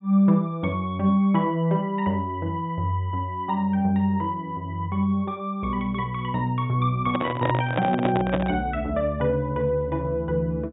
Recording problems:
treble cut off; nothing above 4 kHz
microphone handling noise; from 7 to 8.5 s; peak +3 dB vs average level

